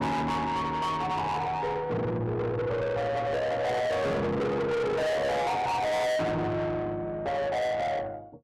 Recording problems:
distortion; soft clipping, signal-to-distortion ratio 6 dB

